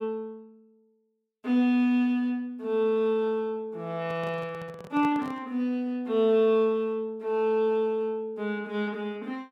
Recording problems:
microphone handling noise; from 4 to 5.5 s; peak -8 dB vs average level

